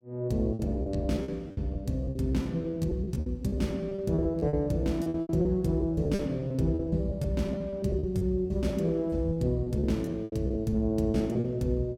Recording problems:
lost packets; 16% of the sound replaced, filled with repeated pitch periods

